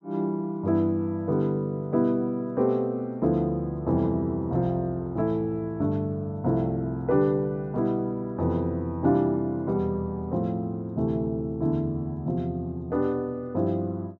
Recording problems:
none

